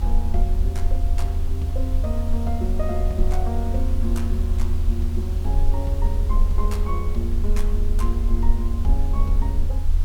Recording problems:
background hiss; slope -4 dB per octave, SNR 11 dB
low-frequency rumble; below 76 Hz, SNR -7 dB

